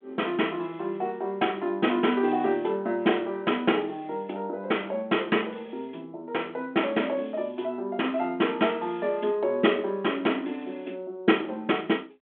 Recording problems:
telephone audio; 190 Hz to 3.4 kHz, G.726

